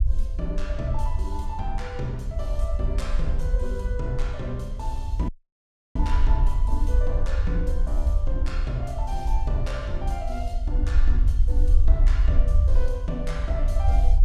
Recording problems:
low-frequency rumble; below 56 Hz, SNR -7 dB
audio cutting out; at 5.5 s for 0.5 s

